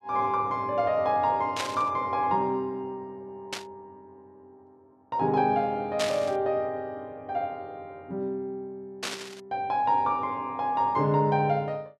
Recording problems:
static burst; 4 times, first at 1.5 s; peak +1 dB vs average level

